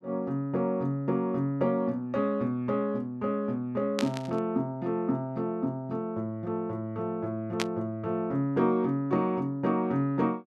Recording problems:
static burst; at 4 s and at 7.5 s; peak +3 dB vs average level

